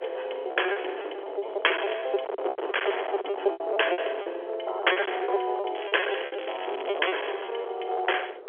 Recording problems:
phone line; 340 Hz to 3.4 kHz, G.711
distortion; hard clipping, signal-to-distortion ratio 14 dB
wind on the microphone; below 910 Hz, SNR 6 dB
packet loss; 15% of the sound replaced, filled with repeated pitch periods
crackling; from 6 to 7 s; loose cable, SNR 14 dB

